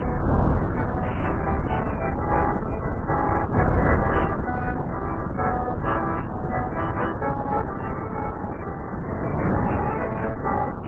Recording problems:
codec artefacts; MP3, then Opus, log-spectral distance 4 dB
wind noise; below 640 Hz, SNR -2 dB

